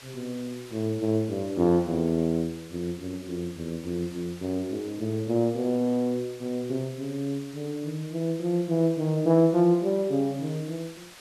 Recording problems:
hiss; slope 0 dB per octave, SNR 20 dB

